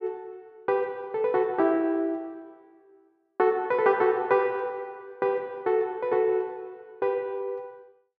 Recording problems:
none

